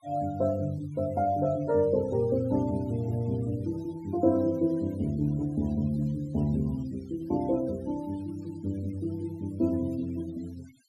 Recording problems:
denoising artefacts; signal-to-artefact ratio 24 dB

